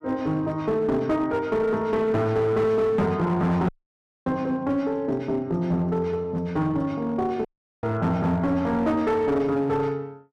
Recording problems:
distorted audio; hard clipping, uneven, signal-to-distortion ratio 11 dB
audio cutting out; at 3.5 s for 0.5 s and at 7.5 s

